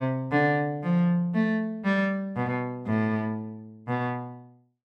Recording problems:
none

